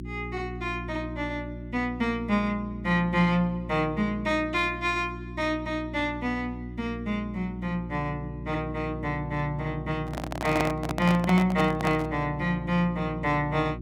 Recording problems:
hum; 60 Hz, harmonics up to 360 Hz, SNR 10 dB
handling noise; from 10 to 12 s; peak +3 dB vs average level

